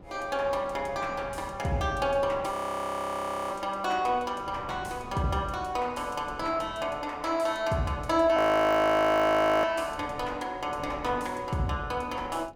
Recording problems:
wind on the microphone; below 430 Hz, SNR 19 dB
audio freezing; at 2.5 s for 1 s and at 8.5 s for 1.5 s

